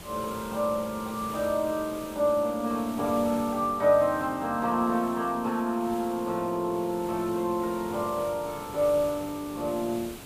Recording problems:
background hiss; slope -4 dB per octave, SNR 15 dB

